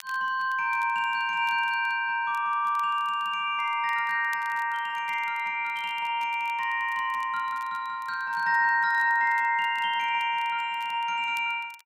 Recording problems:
crackling; vinyl, SNR 29 dB

